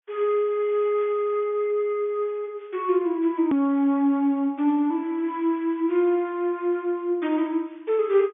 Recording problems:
treble cut off; nothing above 3.5 kHz
edit click; at 3.5 s

